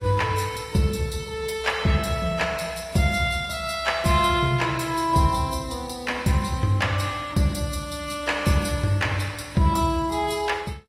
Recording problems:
lossy codec; AAC, log-spectral distance 4 dB, nothing above 14.3 kHz

